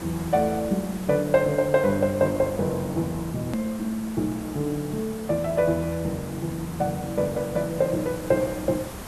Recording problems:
hiss; slope -5 dB per octave, SNR 13 dB
hard cut with a click; at 3.5 s

